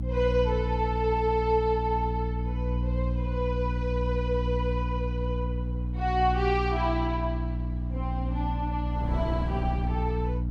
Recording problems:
hum; 60 Hz, harmonics up to 300 Hz, SNR 0 dB
wind on the microphone; below 330 Hz, SNR 15 dB

